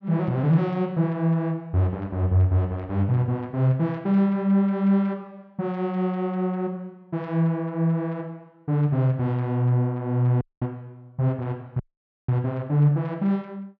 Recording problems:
dropout; at 10 s and at 12 s

